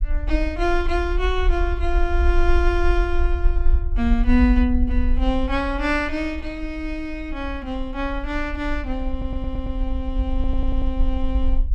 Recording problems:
low-frequency rumble; below 54 Hz, SNR 1 dB
audio stuttering; at 9 s and at 10 s

